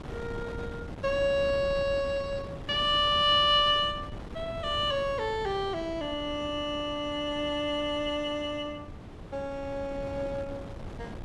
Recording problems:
wind noise; below 410 Hz, SNR 14 dB

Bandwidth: 12 kHz